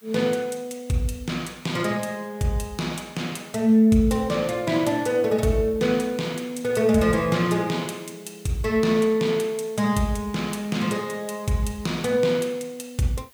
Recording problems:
background hiss; slope 0 dB per octave, SNR 27 dB

